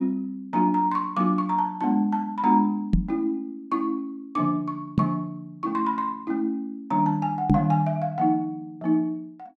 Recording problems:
microphone bump; at 3 s, at 5 s and at 7.5 s; peak +9 dB vs average level

